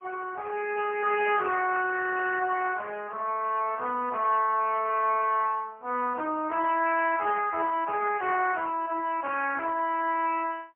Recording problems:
telephone audio; 280 Hz to 3.3 kHz, AMR-NB, then MP3

